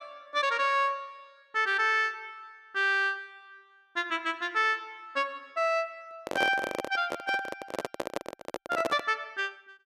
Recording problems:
handling noise; from 6 to 9 s; peak +2 dB vs average level

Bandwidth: 13.5 kHz